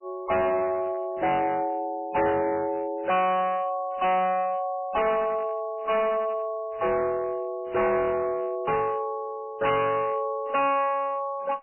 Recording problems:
codec artefacts; MP3, log-spectral distance 2 dB, nothing above 3 kHz
distortion; hard clipping, uneven, signal-to-distortion ratio 8 dB

